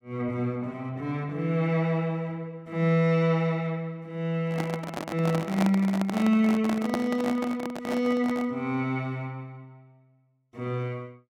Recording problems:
microphone handling noise; from 4.5 to 8.5 s; peak +3 dB vs average level

